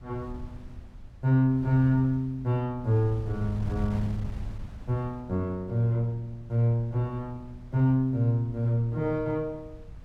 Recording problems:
wind noise; below 110 Hz, SNR 15 dB

